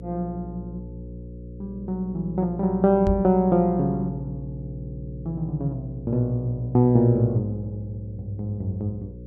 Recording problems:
hum; 60 Hz, harmonics up to 540 Hz, SNR 14 dB
knock on the microphone; at 3 s; peak +1 dB vs average level

